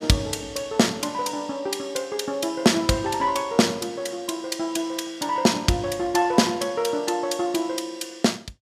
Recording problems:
none

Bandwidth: 15.5 kHz